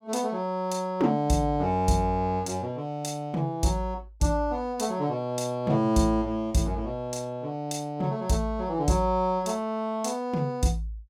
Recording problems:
none

